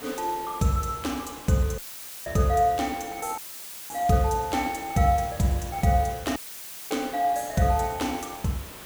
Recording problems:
hiss; slope -3 dB per octave, SNR 15 dB
dropout; at 2 s, at 3.5 s for 0.5 s and at 6.5 s for 0.5 s; filled with static

